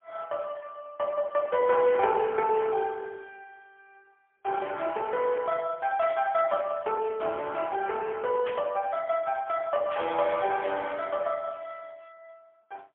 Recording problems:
phone line; 340 Hz to 3.3 kHz, AMR-NB, then MP3
static burst; at 6 s, at 8.5 s and at 10 s; peak -6 dB vs average level

